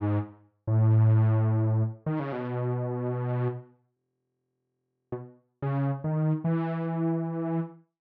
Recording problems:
audio freezing; at 4 s for 1 s

